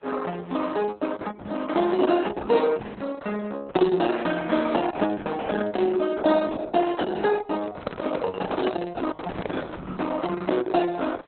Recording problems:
lossy codec; AAC, then Opus, log-spectral distance 4 dB, nothing above 4 kHz
microphone handling noise; from 7.5 to 10 s; peak +1 dB vs average level

